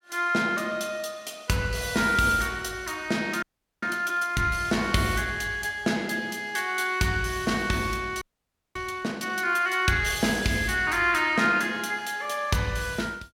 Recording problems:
frozen audio; at 3.5 s and at 8 s for 0.5 s

